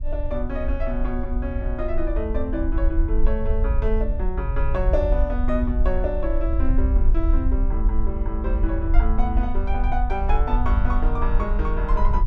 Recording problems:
low-frequency rumble; below 52 Hz, SNR -3 dB

